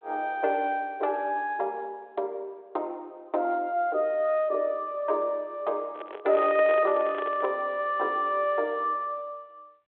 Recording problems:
telephone audio; 340 Hz to 3.7 kHz, G.726
handling noise; from 6 to 7.5 s; peak -4 dB vs average level

